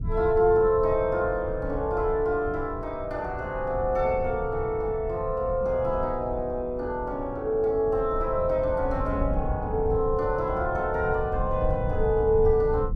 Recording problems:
low-frequency rumble; below 110 Hz, SNR 9 dB

